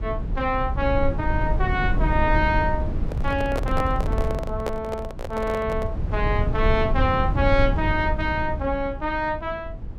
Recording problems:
low-frequency rumble; below 100 Hz, SNR 2 dB
handling noise; from 3 to 6 s; peak 0 dB vs average level

